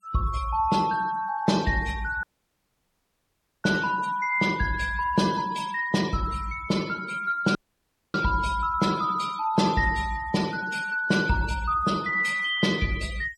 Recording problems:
noise reduction artefacts; signal-to-artefact ratio 15 dB
audio cutting out; at 2 s for 1.5 s and at 7.5 s for 0.5 s

